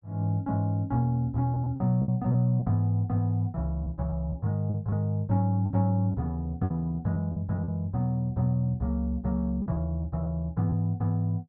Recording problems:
packet loss; 6% of the sound replaced, filled with repeated pitch periods

